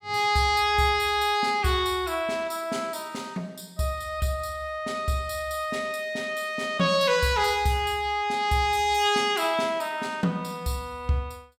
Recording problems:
none

